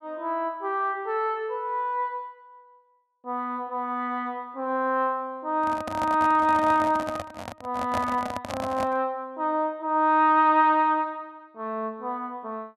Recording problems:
microphone handling noise; from 5.5 to 9 s; peak -2 dB vs average level

